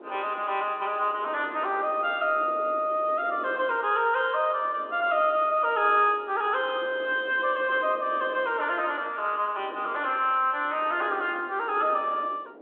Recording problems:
phone line; 260 Hz to 3.6 kHz, G.726
wind noise; below 630 Hz, SNR 19 dB

